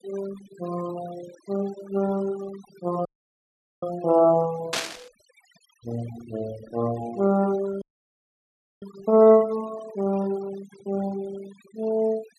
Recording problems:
noise reduction artefacts; signal-to-artefact ratio 20 dB
dropout; at 3 s for 1 s and at 8 s for 1 s
burst of static; at 4.5 s; peak +2 dB vs average level

